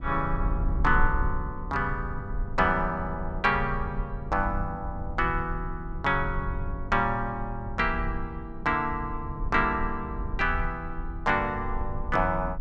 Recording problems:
rumble; below 66 Hz, SNR 7 dB

